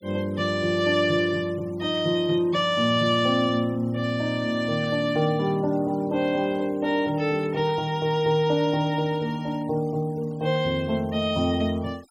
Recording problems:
noise reduction artefacts; signal-to-artefact ratio 27 dB

